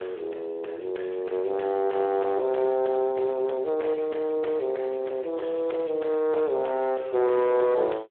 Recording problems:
phone line; 320 Hz to 2.9 kHz, Speex
distorted audio; soft clipping, signal-to-distortion ratio 8 dB

